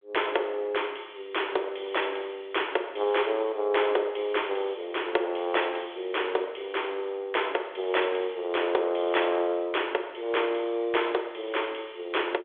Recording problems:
phone line; 320 Hz to 3.5 kHz, G.726

